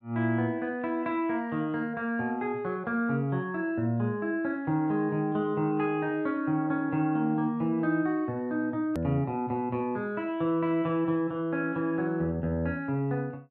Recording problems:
click at an edit; at 9 s

